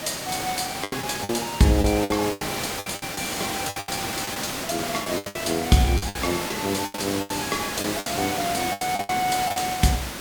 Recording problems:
background hiss; slope -3 dB per octave, SNR 4 dB
crackling; vinyl, SNR 29 dB
lost packets; 14% of the sound replaced, filled with the last packet

